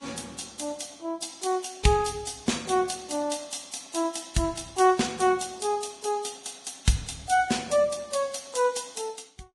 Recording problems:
codec artefacts; Vorbis, log-spectral distance 9 dB, nothing above 10.7 kHz

